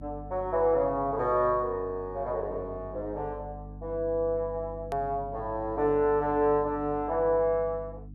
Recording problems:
electrical hum; 50 Hz, harmonics up to 300 Hz, SNR 16 dB
edit click; at 5 s

